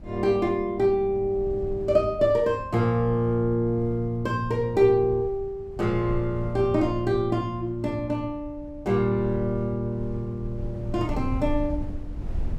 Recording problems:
wind on the microphone; below 94 Hz, SNR 13 dB

